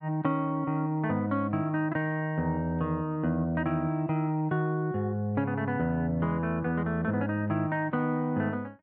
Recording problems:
treble missing; nothing above 5.5 kHz

